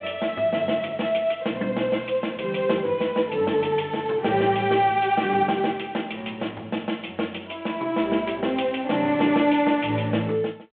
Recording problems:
telephone audio; 190 Hz to 3.4 kHz, G.726

